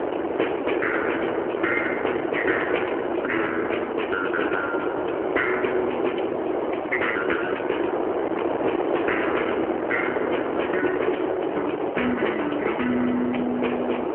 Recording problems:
telephone audio; 280 Hz to 3.2 kHz, AMR-NB
wind on the microphone; below 750 Hz, SNR 0 dB

